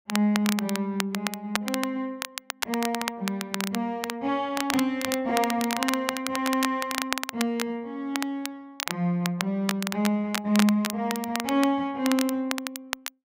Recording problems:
crackle; vinyl, SNR 5 dB

